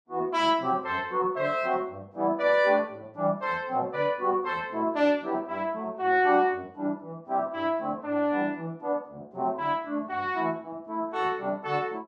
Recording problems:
none

